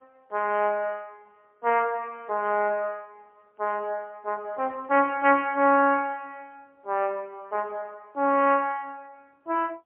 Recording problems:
telephone audio; 300 Hz to 3.1 kHz, AMR-NB, then MP3

